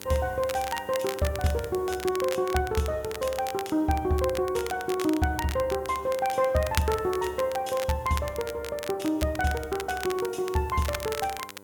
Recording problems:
electrical hum; 50 Hz, harmonics up to 2.5 kHz, SNR 23 dB
hiss; SNR 27 dB
crackle; vinyl, SNR 11 dB

